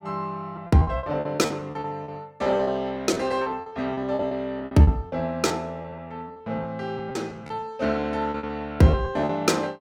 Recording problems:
lost packets; 17% of the sound replaced, filled with repeated pitch periods

